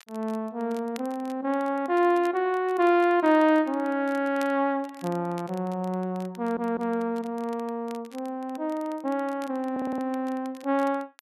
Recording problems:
crackle; vinyl, SNR 25 dB
audio stuttering; at 6.5 s and at 9.5 s

